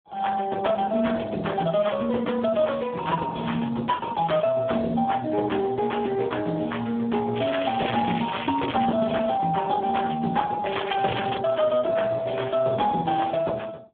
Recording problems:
telephone audio; 190 Hz to 3.6 kHz, Speex
crackling; from 7.5 to 9 s and at 11 s; loose cable, SNR 12 dB

